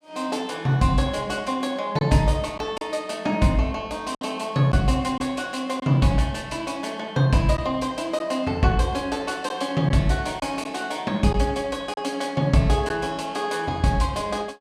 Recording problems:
lost packets; 2% of the sound replaced, filled with silence

